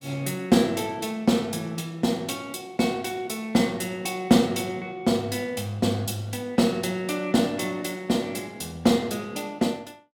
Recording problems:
none

